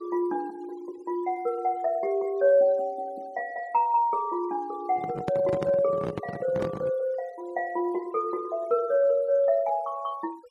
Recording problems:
denoising artefacts; signal-to-artefact ratio 25 dB
microphone handling noise; from 5 to 7 s; peak -1 dB vs average level

